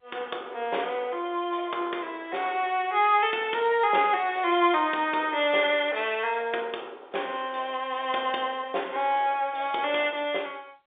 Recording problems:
phone line; 320 Hz to 3.6 kHz, G.711

